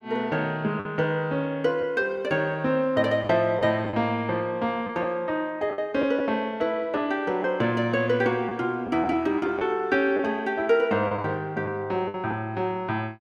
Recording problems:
lost packets; 4% of the sound replaced, filled with the last packet

